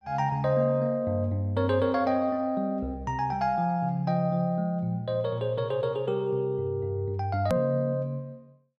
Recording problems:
hard cut with a click; at 7.5 s

